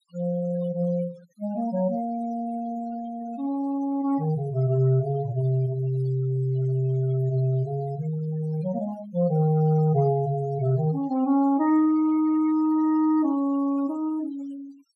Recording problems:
noise reduction artefacts; signal-to-artefact ratio 22 dB

